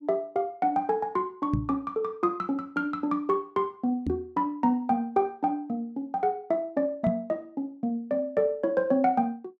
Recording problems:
microphone thump; at 1.5 s, at 4 s and at 7 s; peak +4 dB vs average level

